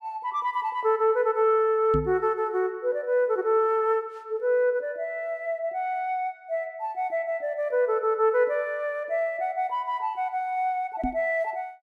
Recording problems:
knock on the microphone; at 2 s and at 11 s; peak +1 dB vs average level

